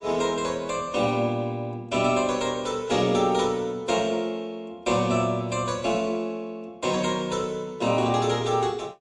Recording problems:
lossy compression; MP3, log-spectral distance 2 dB

